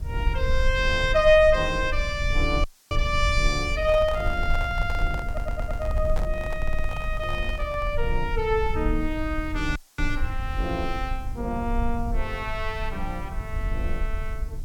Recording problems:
hiss; slope +1 dB per octave, SNR 29 dB
rumble; below 60 Hz, SNR 5 dB
dropout; at 2.5 s and at 10 s
microphone handling noise; from 4 to 8 s; peak -6 dB vs average level
stutter; at 5.5 s and at 6.5 s

